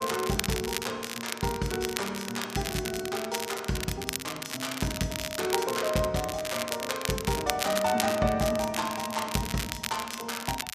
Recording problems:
crackling; vinyl, SNR 4 dB

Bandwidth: 14.5 kHz